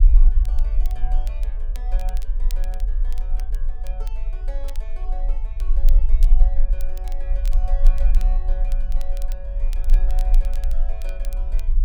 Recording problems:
rumble; below 38 Hz, strongest tone 20 Hz, SNR -19 dB
crackling; vinyl, SNR 6 dB

